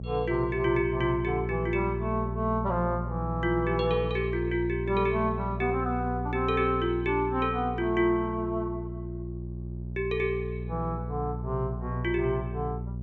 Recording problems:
treble missing; nothing above 7.6 kHz
hum; 60 Hz, harmonics up to 420 Hz, SNR 6 dB

